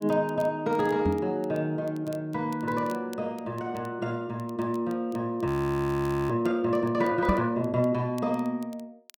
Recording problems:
crackle; vinyl, SNR 28 dB
microphone bump; at 1 s and at 7.5 s; peak +5 dB vs average level
audio freezing; at 5.5 s for 1 s

